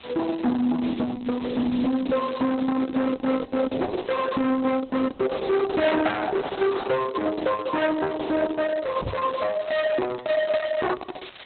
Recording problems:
lossy codec; Opus, log-spectral distance 11 dB, nothing above 4 kHz
distortion; soft clipping, signal-to-distortion ratio 7 dB
background hiss; SNR 17 dB
microphone bump; at 9 s; peak +2 dB vs average level

